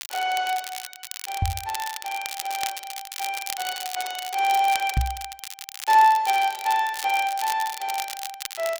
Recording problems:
crackling; vinyl, SNR 10 dB
microphone thump; at 1.5 s and at 5 s; peak +5 dB vs average level

